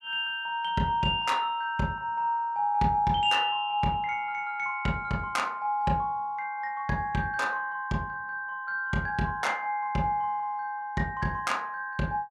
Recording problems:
none

